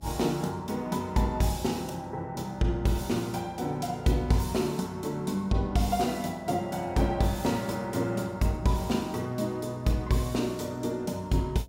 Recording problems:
electrical hum; 60 Hz, harmonics up to 660 Hz, SNR 25 dB

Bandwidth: 16 kHz